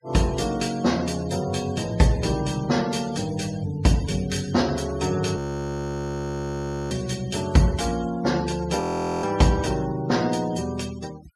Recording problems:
denoising artefacts; signal-to-artefact ratio 18 dB
frozen audio; at 5.5 s for 1.5 s and at 9 s

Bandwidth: 13.5 kHz